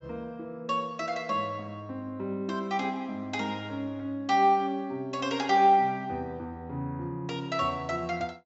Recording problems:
treble cut off; nothing above 8 kHz

